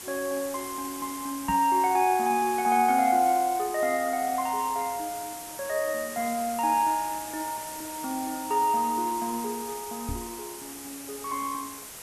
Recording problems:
hiss; slope -1 dB per octave, SNR 11 dB
knock on the microphone; at 1.5 s and at 10 s; peak -3 dB vs average level

